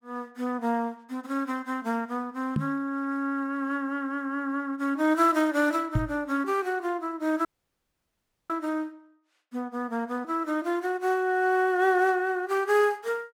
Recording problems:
knock on the microphone; at 2.5 s and at 6 s; peak +5 dB vs average level
audio cutting out; at 7.5 s for 1 s

